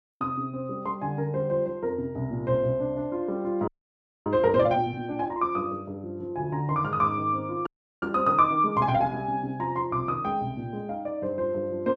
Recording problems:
frozen audio; at 3.5 s for 0.5 s and at 7.5 s

